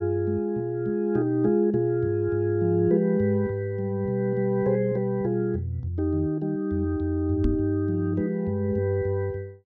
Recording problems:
knock on the microphone; at 7.5 s; peak +2 dB vs average level

